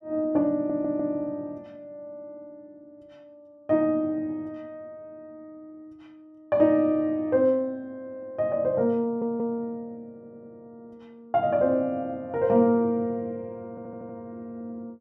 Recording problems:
stutter; 4 times, first at 0.5 s

